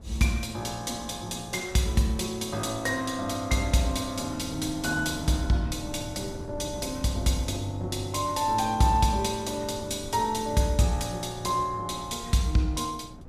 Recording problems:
wind noise; below 250 Hz, SNR 17 dB

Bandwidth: 14.5 kHz